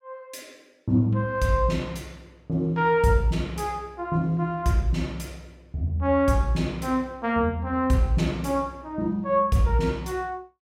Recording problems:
none

